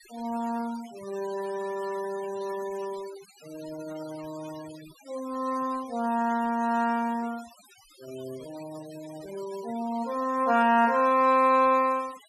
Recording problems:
noise reduction artefacts; signal-to-artefact ratio 22 dB

